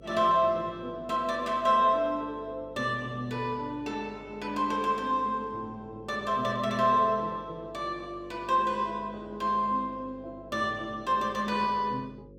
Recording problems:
hum; 50 Hz, harmonics up to 550 Hz, SNR 22 dB

